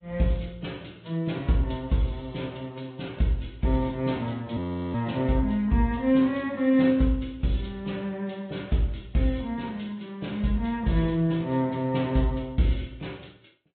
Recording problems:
treble missing; nothing above 4 kHz
codec artefacts; AAC, log-spectral distance 3 dB
audio freezing; at 4.5 s

